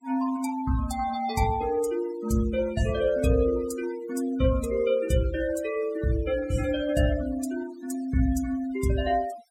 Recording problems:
denoising artefacts; signal-to-artefact ratio 17 dB

